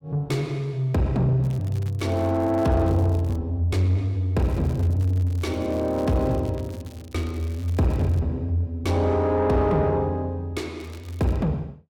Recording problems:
distortion; soft clipping, signal-to-distortion ratio 11 dB
crackle; from 1.5 to 3.5 s, from 4.5 to 8 s and at 11 s; loose cable, SNR 26 dB

